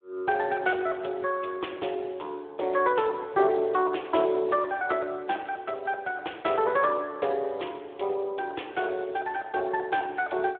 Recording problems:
telephone audio; 300 Hz to 3.5 kHz, Speex

